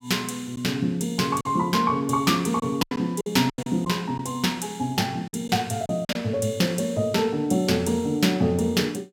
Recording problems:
packet loss; 5% of the sound replaced, filled with silence

